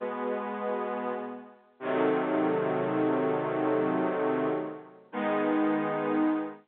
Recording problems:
telephone audio; 220 Hz to 3.7 kHz, G.711

